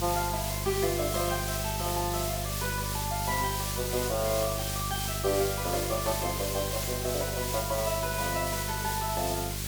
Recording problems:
hum; 50 Hz, harmonics up to 800 Hz, SNR 4 dB
hiss; slope +2 dB per octave, SNR 1 dB

